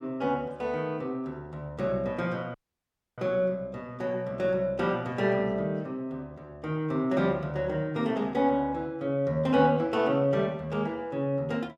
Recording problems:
dropout; at 2.5 s for 0.5 s

